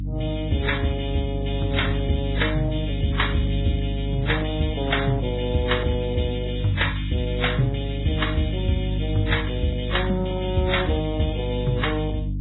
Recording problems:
lossy codec; AAC, then MP3, log-spectral distance 7 dB, nothing above 3.8 kHz
electrical hum; 50 Hz, harmonics up to 300 Hz, SNR 2 dB

